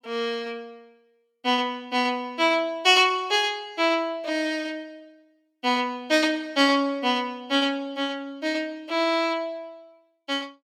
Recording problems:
none

